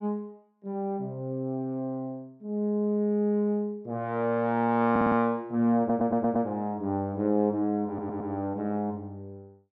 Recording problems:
stutter; at 5 s, at 6 s and at 8 s

